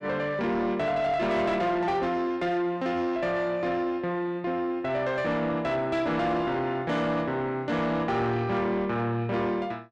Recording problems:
distortion; soft clipping, signal-to-distortion ratio 10 dB

